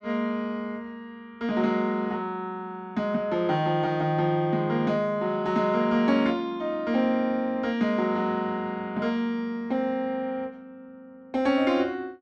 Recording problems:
none

